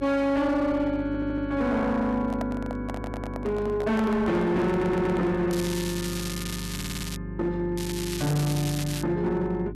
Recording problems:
distortion; hard clipping, signal-to-distortion ratio 10 dB
hum; 50 Hz, harmonics up to 400 Hz, SNR 11 dB
audio stuttering; 4 times, first at 1 s
microphone handling noise; from 2.5 to 5.5 s; peak -4 dB vs average level
crackle; from 5.5 to 7 s and from 8 to 9 s; loose cable, SNR 8 dB

